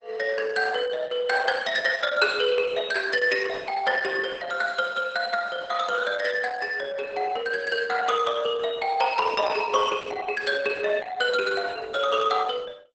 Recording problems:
lossy codec; Opus, log-spectral distance 4 dB, nothing above 8.2 kHz
burst of static; at 10 s; peak -14 dB vs average level

